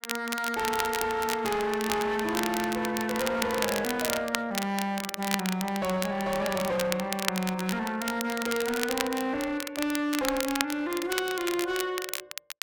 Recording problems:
distorted audio; hard clipping, signal-to-distortion ratio 10 dB
crackling; vinyl, SNR 5 dB

